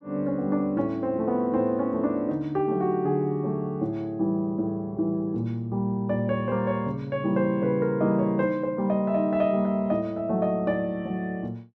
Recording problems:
none

